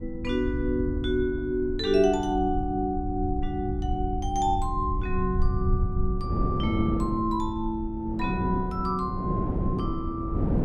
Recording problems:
low-frequency rumble; below 88 Hz, SNR 6 dB
wind noise; below 280 Hz, SNR 6 dB

